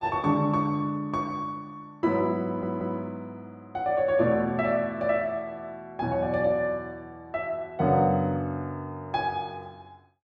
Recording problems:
audio stuttering; at 2.5 s

